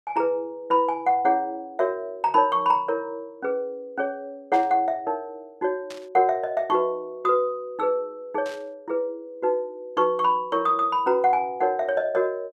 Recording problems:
static burst; at 4.5 s, at 6 s and at 8.5 s; peak -12 dB vs average level

